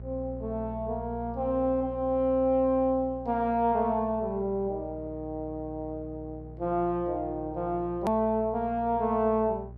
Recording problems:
mains hum; 60 Hz, harmonics up to 660 Hz, SNR 15 dB
hard cut with a click; at 8 s

